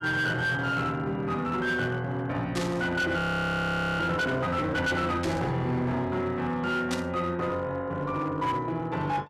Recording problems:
distorted audio; hard clipping, signal-to-distortion ratio 12 dB
burst of static; at 2.5 s, at 5 s and at 7 s; peak -2 dB vs average level
audio freezing; at 3 s for 1 s

